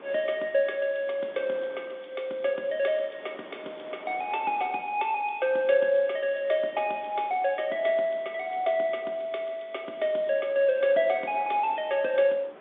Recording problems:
phone line; 260 Hz to 3.6 kHz, G.711
wind on the microphone; below 1.3 kHz, SNR 23 dB

